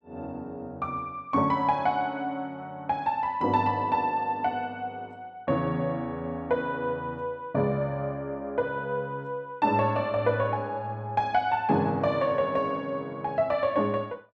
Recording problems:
none

